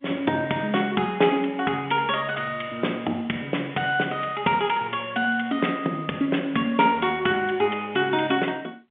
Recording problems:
telephone audio; 190 Hz to 3.6 kHz, G.711

